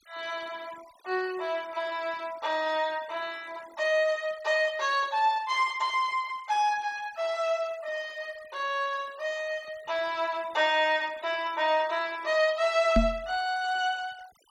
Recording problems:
denoising artefacts; signal-to-artefact ratio 23 dB
microphone thump; at 13 s; peak +7 dB vs average level

